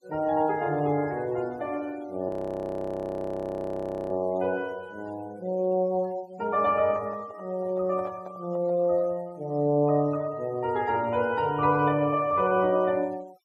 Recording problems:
denoising artefacts; signal-to-artefact ratio 26 dB
frozen audio; at 2.5 s for 2 s
microphone handling noise; from 7 to 9 s; peak -11 dB vs average level

